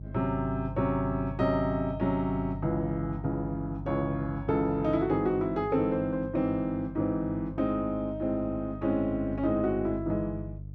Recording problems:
hum; 50 Hz, harmonics up to 300 Hz, SNR 11 dB

